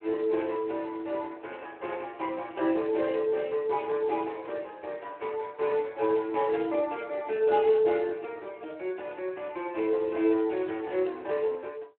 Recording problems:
phone line; 280 Hz to 3.1 kHz, Speex

